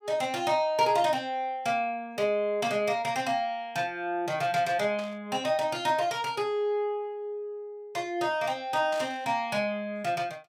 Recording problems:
burst of static; at 5 s and at 9 s; peak -10 dB vs average level

